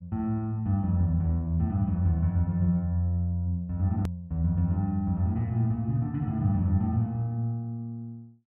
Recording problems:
hard cut with a click; at 4 s

